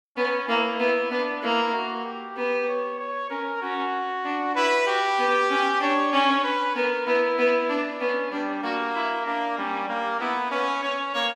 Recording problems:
none

